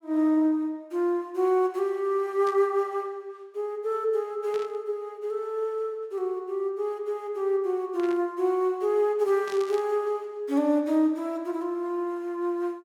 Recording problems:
static burst; 4 times, first at 2.5 s; peak -12 dB vs average level

